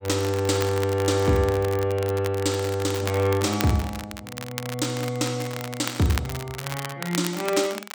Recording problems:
crackle; vinyl, SNR 11 dB

